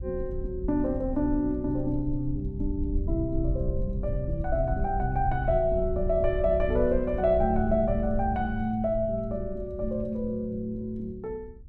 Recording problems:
wind noise; below 72 Hz, SNR 6 dB

